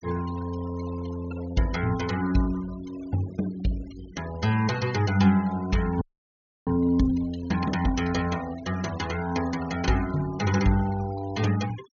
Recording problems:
treble missing; nothing above 6.9 kHz
noise reduction artefacts; signal-to-artefact ratio 17 dB
audio freezing; at 6 s for 0.5 s

